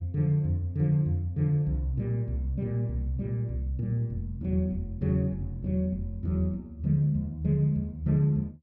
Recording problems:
none

